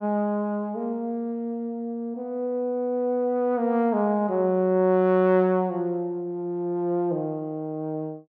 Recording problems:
none

